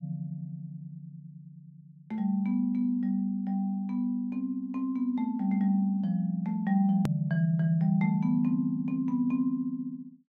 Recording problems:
hard cut with a click; at 7 s

